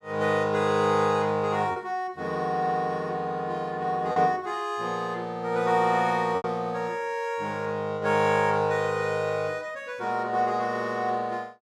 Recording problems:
lost packets; 1.4% of the sound replaced, filled with repeated pitch periods

